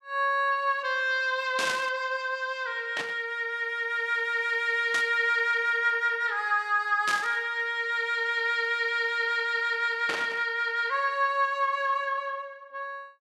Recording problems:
static burst; 5 times, first at 1.5 s; peak -1 dB vs average level

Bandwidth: 12.5 kHz